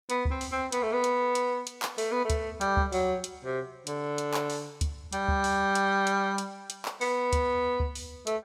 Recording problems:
none

